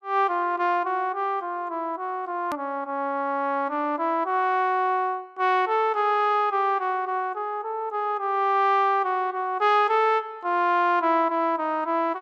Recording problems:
edit click; at 2.5 s

